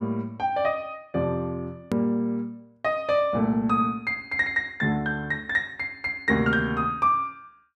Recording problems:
edit click; at 2 s

